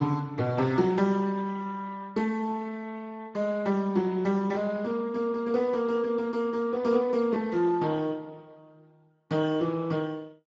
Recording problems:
lossy compression; Speex, log-spectral distance 3 dB, nothing above 7.3 kHz

